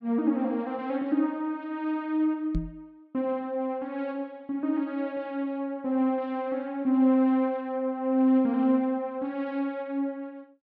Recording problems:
microphone bump; at 2.5 s; peak +1 dB vs average level

